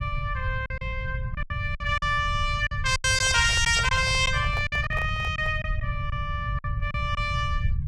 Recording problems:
low-frequency rumble; below 110 Hz, SNR 6 dB
packet loss; 9% of the sound replaced, filled with silence
microphone handling noise; from 3 to 5.5 s; peak -8 dB vs average level

